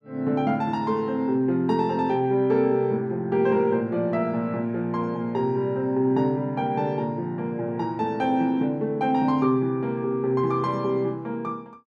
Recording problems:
none

